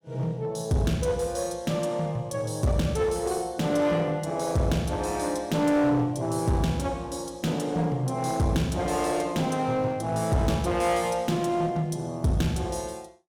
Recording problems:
distorted audio; hard clipping, uneven, signal-to-distortion ratio 11 dB

